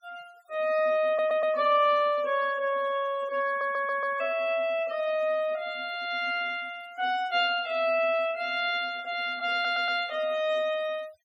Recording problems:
noise reduction artefacts; signal-to-artefact ratio 24 dB
stutter; at 1 s, at 3.5 s and at 9.5 s

